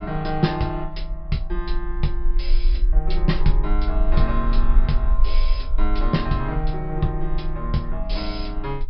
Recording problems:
treble missing; nothing above 5.4 kHz
rumble; below 40 Hz, strongest tone 22 Hz, SNR 0 dB

